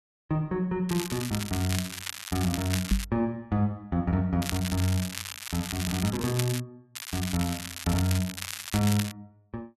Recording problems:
crackle; from 1 to 3 s, from 4.5 to 6.5 s and from 7 to 9 s; loose cable, SNR 6 dB
knock on the microphone; at 3 s; peak +7 dB vs average level

